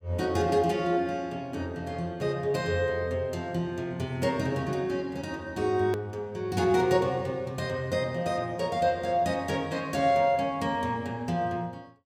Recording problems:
click at an edit; at 6 s

